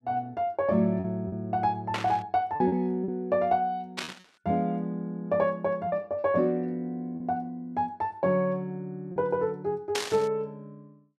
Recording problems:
packet loss; 4% of the sound replaced, filled with repeated pitch periods
burst of static; at 2 s, at 4 s and at 10 s; peak +2 dB vs average level

